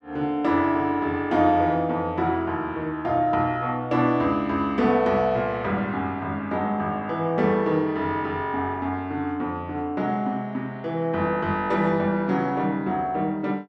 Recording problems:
none

